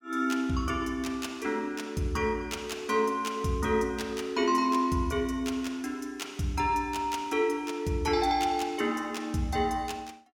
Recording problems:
none

